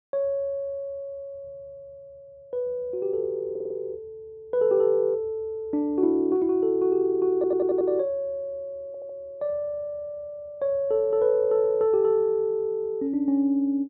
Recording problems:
stutter; at 3.5 s, at 7.5 s and at 9 s

